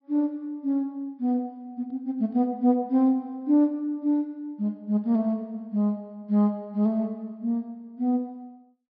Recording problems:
treble missing; nothing above 5.5 kHz

